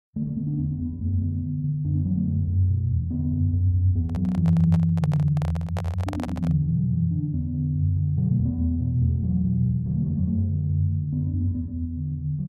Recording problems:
handling noise; from 4 to 6.5 s; peak -6 dB vs average level

